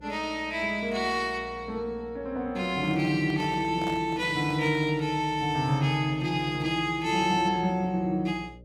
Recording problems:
electrical hum; 60 Hz, harmonics up to 600 Hz, SNR 22 dB
handling noise; from 2.5 to 5 s; peak -7 dB vs average level

